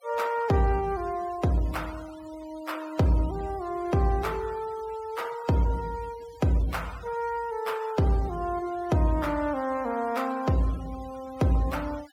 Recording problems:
noise reduction artefacts; signal-to-artefact ratio 20 dB

